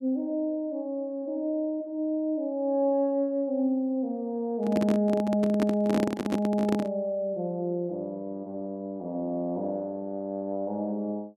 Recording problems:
handling noise; from 4.5 to 7 s; peak +4 dB vs average level

